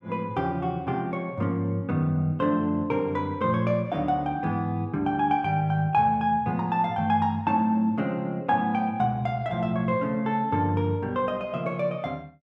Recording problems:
none

